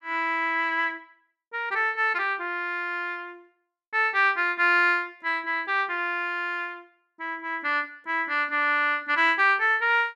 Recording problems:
none

